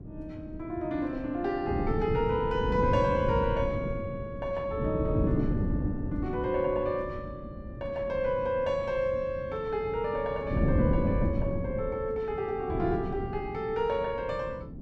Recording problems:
wind on the microphone; below 250 Hz, SNR 3 dB

